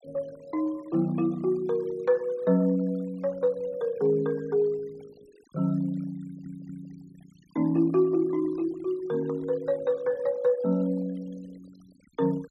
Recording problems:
denoising artefacts; signal-to-artefact ratio 27 dB
audio stuttering; at 6 s

